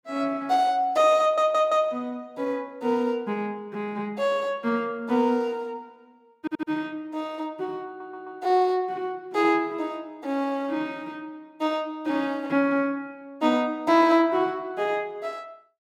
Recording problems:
stutter; at 1 s, at 6.5 s and at 8 s

